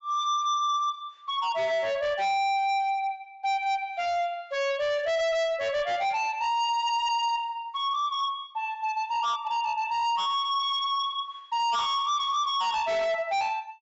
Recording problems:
treble cut off; nothing above 8 kHz
distortion; hard clipping, signal-to-distortion ratio 8 dB

